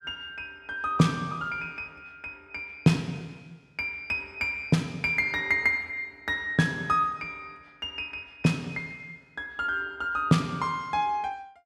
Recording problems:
none

